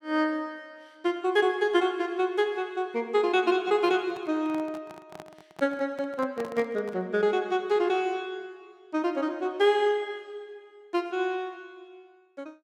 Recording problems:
handling noise; from 4 to 7 s; peak -9 dB vs average level

